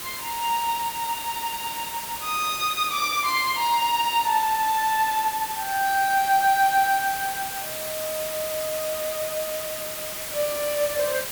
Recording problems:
hiss; slope 0 dB per octave, SNR 6 dB

